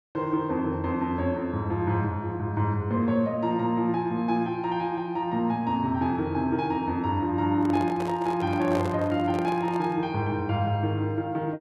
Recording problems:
microphone handling noise; from 7.5 to 10 s; peak -3 dB vs average level

